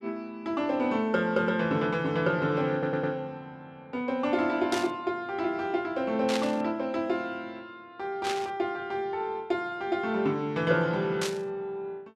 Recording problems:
audio stuttering; at 2.5 s
static burst; 4 times, first at 4.5 s; peak +1 dB vs average level

